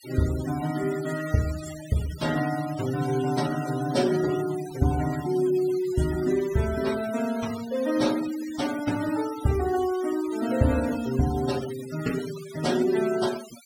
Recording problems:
denoising artefacts; signal-to-artefact ratio 14 dB

